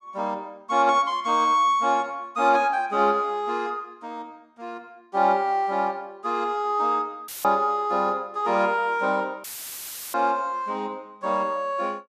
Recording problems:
dropout; at 7.5 s and at 9.5 s for 0.5 s; filled with static

